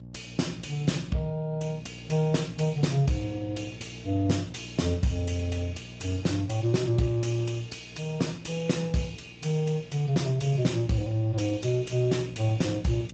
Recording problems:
codec artefacts; Speex, log-spectral distance 4 dB, nothing above 7.6 kHz
distorted audio; soft clipping, signal-to-distortion ratio 10 dB
mains hum; 60 Hz, harmonics up to 600 Hz, SNR 17 dB

